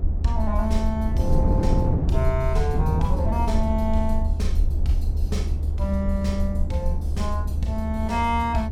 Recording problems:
rumble; below 76 Hz, SNR -2 dB
wind on the microphone; below 230 Hz, SNR 3 dB

